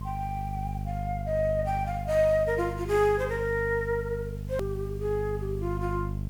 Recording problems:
hum; 50 Hz, harmonics up to 450 Hz, SNR 6 dB
hiss; slope -1 dB per octave, SNR 28 dB
edit click; at 4.5 s

